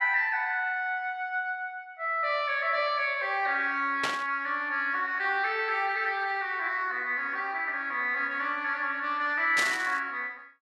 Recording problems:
burst of static; at 4 s and at 9.5 s; peak +2 dB vs average level

